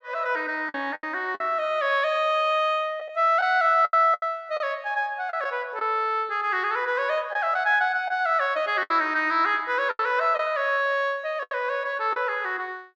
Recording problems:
packet loss; 6% of the sound replaced, filled with the last packet

